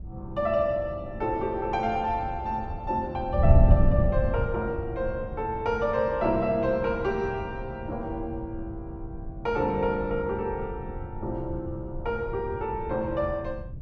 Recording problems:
wind on the microphone; below 120 Hz, SNR 4 dB

